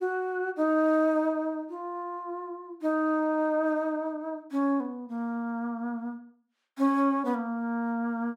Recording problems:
none

